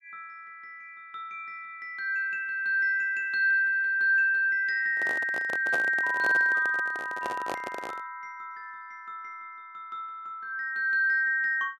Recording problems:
handling noise; from 5 to 8 s; peak -4 dB vs average level

